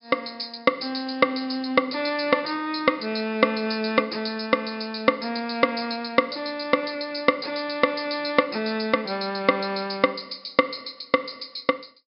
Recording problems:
treble missing; nothing above 5.5 kHz

